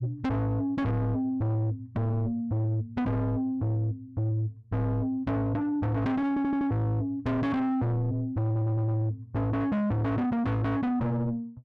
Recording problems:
distorted audio; soft clipping, signal-to-distortion ratio 6 dB
stutter; at 6.5 s and at 8.5 s

